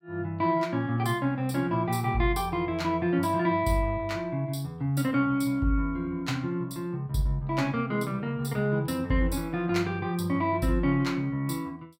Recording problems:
none

